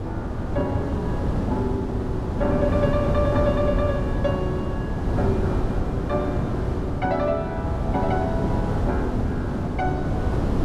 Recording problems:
wind on the microphone; below 310 Hz, SNR -2 dB

